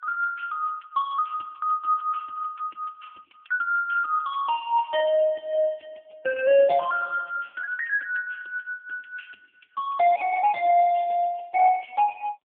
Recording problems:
telephone audio; 260 Hz to 2.6 kHz, AMR-NB

